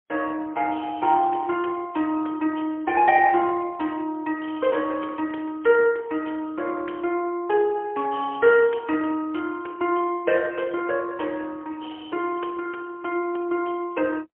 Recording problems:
telephone audio; 280 Hz to 3.3 kHz, AMR-NB, then MP3

